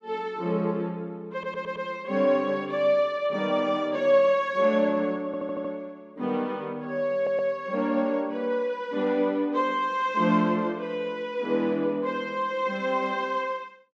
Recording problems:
stutter; at 1.5 s, at 5.5 s and at 7 s

